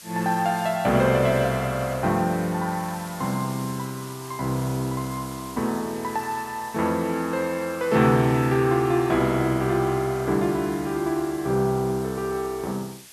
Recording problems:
hiss; slope +2 dB per octave, SNR 18 dB

